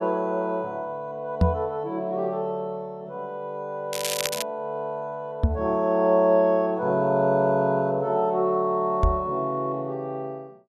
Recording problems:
knock on the microphone; at 1.5 s, at 5.5 s and at 9 s; peak +8 dB vs average level
crackling; at 4 s; loose cable, SNR 4 dB

